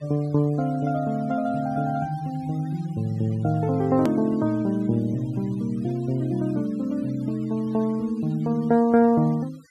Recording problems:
denoising artefacts; signal-to-artefact ratio 26 dB
hard cut with a click; at 4 s

